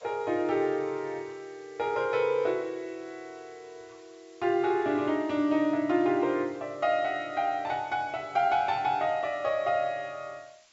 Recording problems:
treble missing; nothing above 8 kHz
hiss; slope +2 dB per octave, SNR 30 dB

